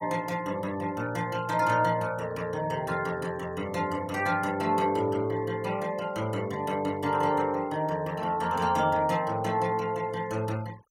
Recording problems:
denoising artefacts; signal-to-artefact ratio 22 dB

